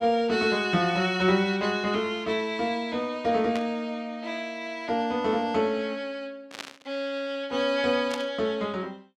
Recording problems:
static burst; at 3.5 s, at 6.5 s and at 8 s; peak -4 dB vs average level

